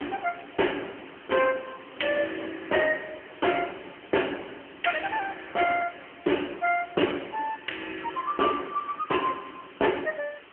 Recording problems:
telephone audio; 220 Hz to 3.1 kHz, AMR-NB
background hiss; SNR 21 dB
wind on the microphone; below 1.6 kHz, SNR 23 dB

